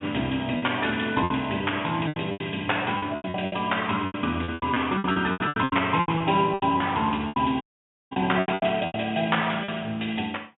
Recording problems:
low-pass filter; nothing above 3.5 kHz
packet loss; 17% of the sound replaced, filled with repeated pitch periods
dropout; at 7.5 s

